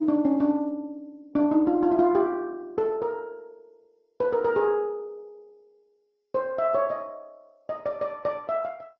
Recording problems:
lossy codec; MP2, then Opus, log-spectral distance 2 dB

